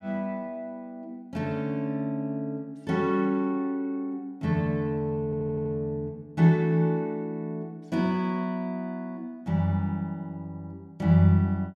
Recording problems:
stutter; at 5 s

